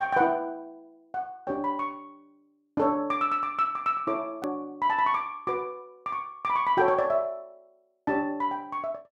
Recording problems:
click at an edit; at 4.5 s

